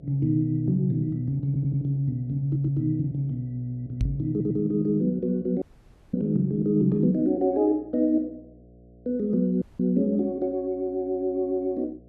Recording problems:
hum; 60 Hz, harmonics up to 720 Hz, SNR 26 dB
stutter; at 1.5 s, at 2.5 s and at 4.5 s
microphone bump; at 4 s; peak +1 dB vs average level
audio cutting out; at 5.5 s for 0.5 s and at 9.5 s

